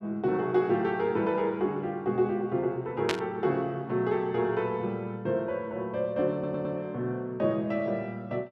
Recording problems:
burst of static; at 3 s; peak +5 dB vs average level
audio stuttering; at 6.5 s

